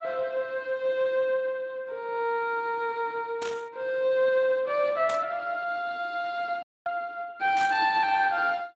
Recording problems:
codec artefacts; Speex, log-spectral distance 3 dB, nothing above 7.3 kHz
burst of static; at 3.5 s, at 5 s and at 7.5 s; peak -6 dB vs average level
audio cutting out; at 6.5 s

